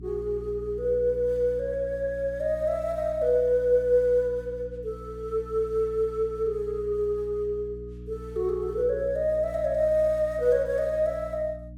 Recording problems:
electrical hum; 60 Hz, harmonics up to 300 Hz, SNR 16 dB

